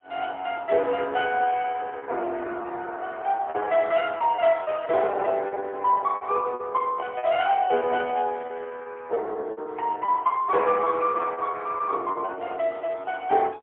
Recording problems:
phone line; 300 Hz to 3.3 kHz, AMR-NB, then MP3
packet loss; 18% of the sound replaced, filled with repeated pitch periods

